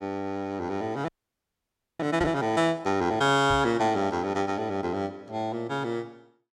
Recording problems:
frozen audio; at 1 s for 1 s
microphone bump; at 2 s and at 3.5 s; peak -4 dB vs average level

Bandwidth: 16.5 kHz